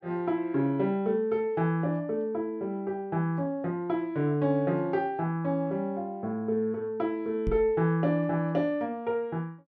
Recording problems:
microphone thump; at 7.5 s; peak +1 dB vs average level

